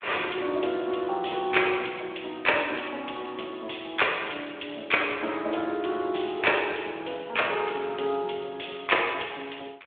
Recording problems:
telephone audio; 240 Hz to 3.6 kHz, Speex

